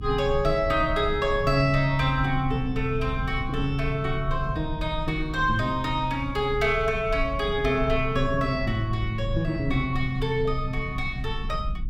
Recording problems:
low-frequency rumble; below 86 Hz, SNR 9 dB

